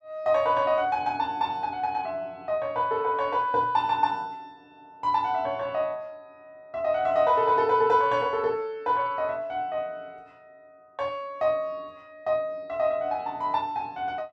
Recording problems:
none

